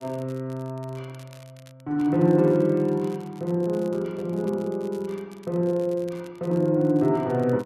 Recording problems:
crackle; vinyl, SNR 29 dB

